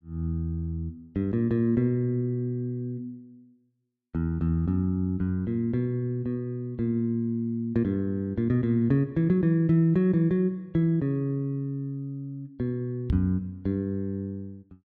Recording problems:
microphone thump; at 13 s; peak +4 dB vs average level

